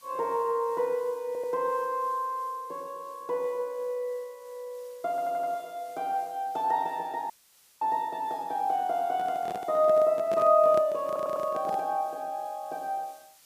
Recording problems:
hiss; slope +2 dB per octave, SNR 27 dB
audio stuttering; at 1.5 s, at 5 s and at 11 s
dropout; at 7.5 s for 0.5 s
microphone handling noise; from 9 to 12 s; peak -4 dB vs average level

